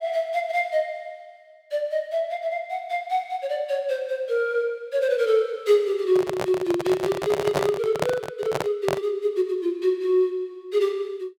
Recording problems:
handling noise; from 6 to 9 s; peak +4 dB vs average level

